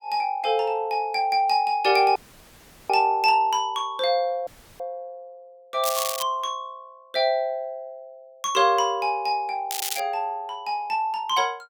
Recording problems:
dropout; at 2 s for 0.5 s and at 4.5 s
crackle; at 6 s and at 9.5 s; loose cable, SNR 6 dB

